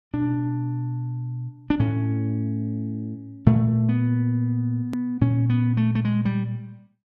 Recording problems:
click at an edit; at 5 s

